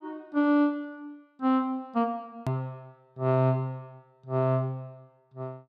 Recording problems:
click at an edit; at 2.5 s

